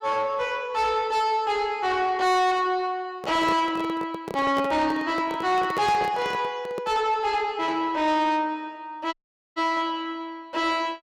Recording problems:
distortion; soft clipping, signal-to-distortion ratio 11 dB
microphone handling noise; from 3 to 7 s; peak -1 dB vs average level
dropout; at 9 s

